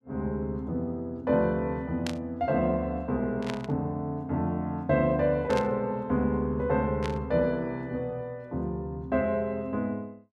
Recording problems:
static burst; 4 times, first at 2 s; peak -2 dB vs average level

